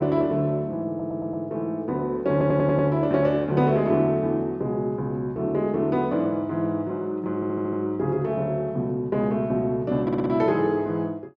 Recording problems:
stutter; 4 times, first at 1 s

